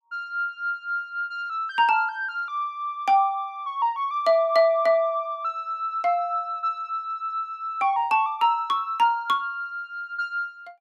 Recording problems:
none

